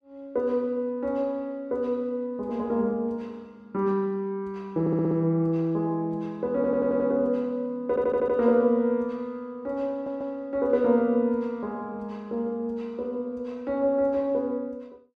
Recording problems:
stutter; 4 times, first at 5 s

